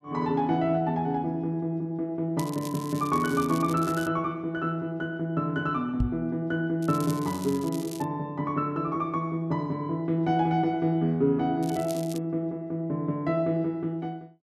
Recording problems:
crackle; from 2.5 to 4 s, from 7 to 8 s and at 12 s; loose cable, SNR 16 dB
knock on the microphone; at 6 s; peak +4 dB vs average level

